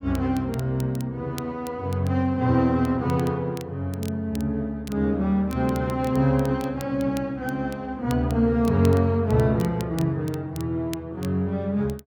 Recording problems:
crackle; vinyl, SNR 22 dB

